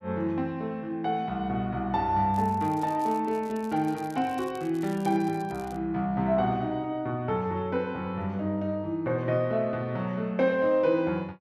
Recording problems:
crackling; from 2.5 to 6 s; loose cable, SNR 24 dB

